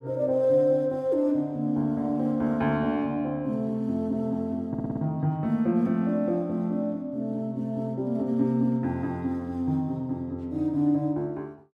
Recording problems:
stutter; at 4.5 s

